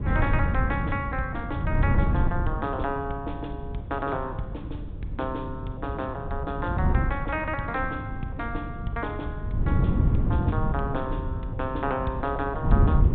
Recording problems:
treble cut off; nothing above 4 kHz
wind on the microphone; below 140 Hz, SNR -2 dB

